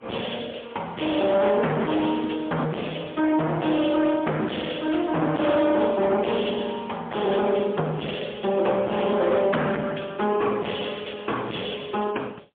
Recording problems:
telephone audio; 260 Hz to 3.5 kHz, AMR-NB, then MP3
distorted audio; hard clipping, signal-to-distortion ratio 7 dB

